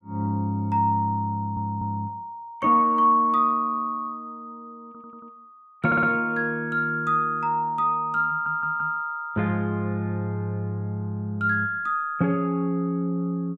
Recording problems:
stutter; 4 times, first at 1.5 s

